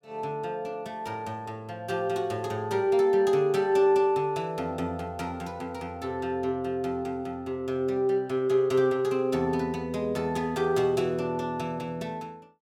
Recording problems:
none

